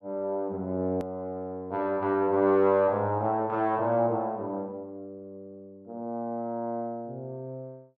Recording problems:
click at an edit; at 1 s

